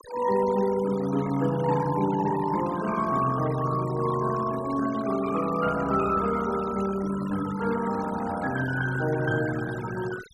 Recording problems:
denoising artefacts; signal-to-artefact ratio 15 dB

